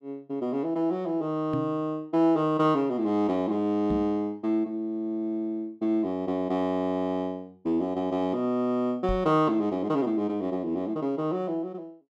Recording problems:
knock on the microphone; at 1.5 s, at 4 s and at 9 s; peak 0 dB vs average level

